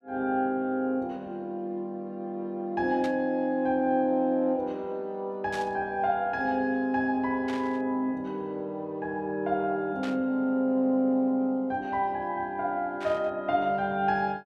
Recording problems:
static burst; 5 times, first at 3 s; peak -8 dB vs average level

